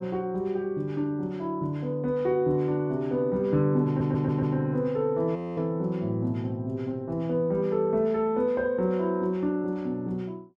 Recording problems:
audio stuttering; at 4 s
frozen audio; at 5.5 s

